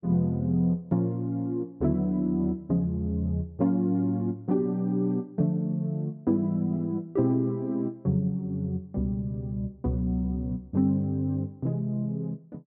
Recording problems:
none

